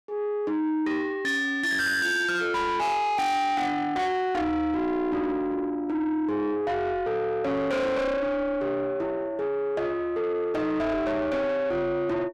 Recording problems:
distorted audio; soft clipping, signal-to-distortion ratio 8 dB

